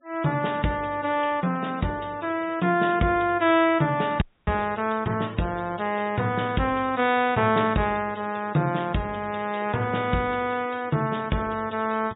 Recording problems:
low-pass filter; nothing above 4 kHz
denoising artefacts; signal-to-artefact ratio 23 dB
frozen audio; at 4 s

